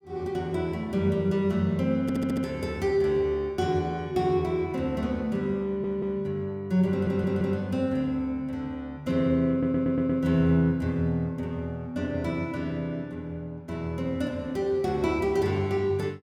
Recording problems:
stutter; 4 times, first at 2 s

